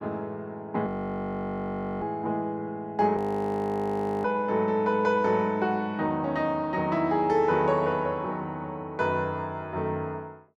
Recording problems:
audio freezing; at 1 s for 1 s and at 3 s for 1 s

